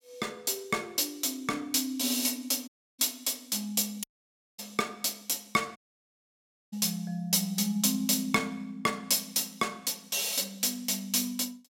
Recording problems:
dropout; at 2.5 s, at 4 s for 0.5 s and at 6 s for 1 s

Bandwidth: 16.5 kHz